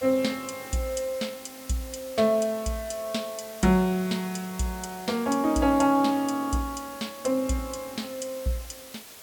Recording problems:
background hiss; slope -1 dB per octave, SNR 16 dB

